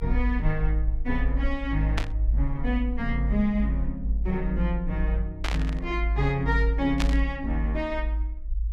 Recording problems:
low-frequency rumble; below 54 Hz, strongest tone 52 Hz, SNR 0 dB
static burst; at 2 s, at 5.5 s and at 7 s; peak +4 dB vs average level

